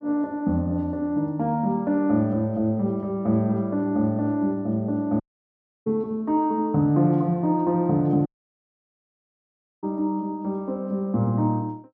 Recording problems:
audio cutting out; at 5 s for 0.5 s and at 8.5 s for 1.5 s

